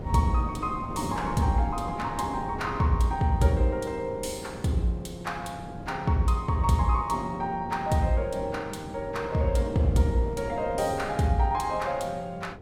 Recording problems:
electrical hum; 50 Hz, harmonics up to 1.4 kHz, SNR 24 dB
wind noise; below 380 Hz, SNR 12 dB

